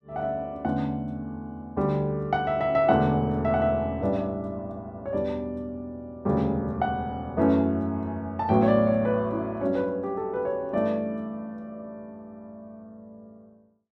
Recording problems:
none

